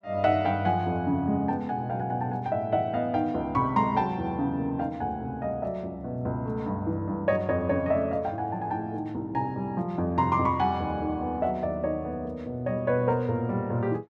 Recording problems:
none

